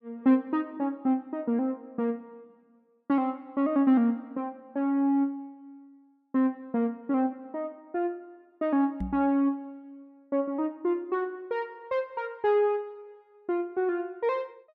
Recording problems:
microphone bump; at 9 s; peak -1 dB vs average level

